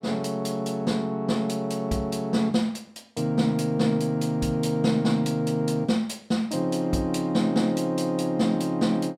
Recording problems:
none

